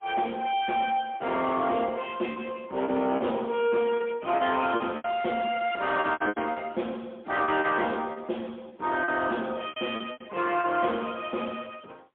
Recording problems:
phone line; 240 Hz to 3.4 kHz, AMR-NB, then MP3
distorted audio; soft clipping, signal-to-distortion ratio 11 dB
packet loss; 9% of the sound replaced, filled with repeated pitch periods

